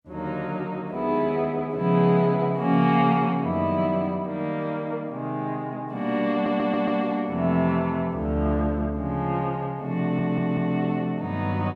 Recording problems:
stutter; at 6.5 s and at 10 s

